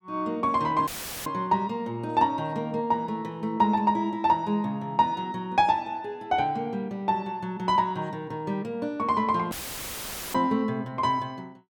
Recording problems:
dropout; at 1 s and at 9.5 s for 1 s; filled with static

